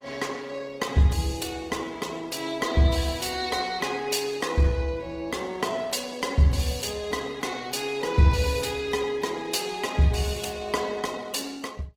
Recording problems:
lossy compression; Opus, log-spectral distance 5 dB, nothing above 19 kHz

